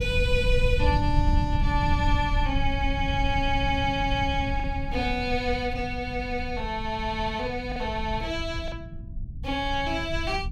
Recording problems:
low-frequency rumble; below 100 Hz, SNR 3 dB
lost packets; 1.2% of the sound replaced, filled with the last packet

